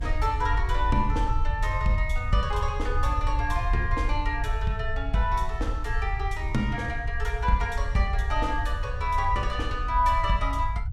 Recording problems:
low-frequency rumble; below 68 Hz, SNR 2 dB

